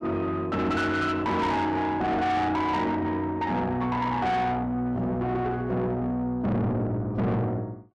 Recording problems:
distorted audio; soft clipping, signal-to-distortion ratio 7 dB

